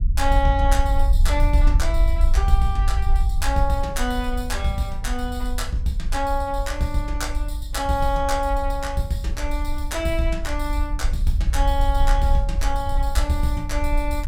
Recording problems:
rumble; below 56 Hz, SNR -1 dB

